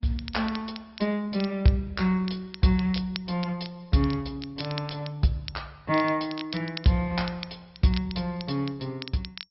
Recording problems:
low-pass filter; nothing above 5.5 kHz
codec artefacts; Opus, log-spectral distance 3 dB
crackling; vinyl, SNR 14 dB

